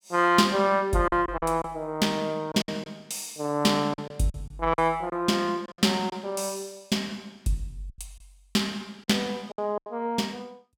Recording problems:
lost packets; 8% of the sound replaced, filled with silence

